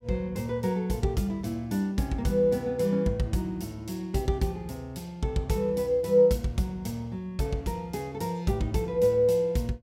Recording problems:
none

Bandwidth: 16.5 kHz